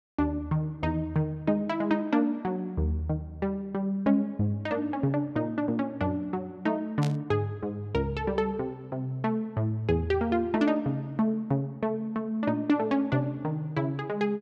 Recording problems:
static burst; at 7 s; peak -6 dB vs average level

